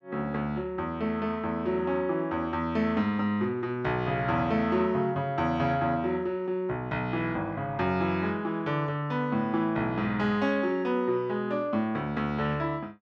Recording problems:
none

